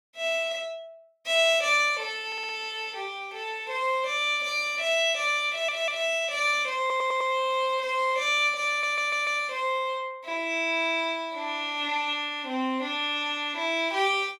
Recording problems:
stutter; 4 times, first at 2.5 s

